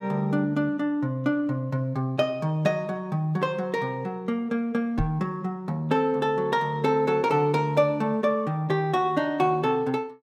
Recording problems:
microphone bump; at 5 s; peak 0 dB vs average level

